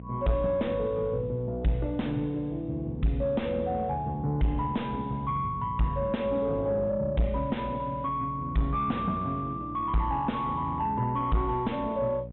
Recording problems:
low-pass filter; nothing above 3.8 kHz
distorted audio; soft clipping, signal-to-distortion ratio 5 dB
hum; 60 Hz, harmonics up to 720 Hz, SNR 14 dB

